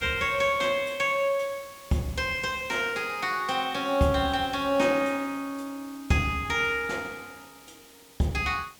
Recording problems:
background hiss; slope -1 dB per octave, SNR 21 dB

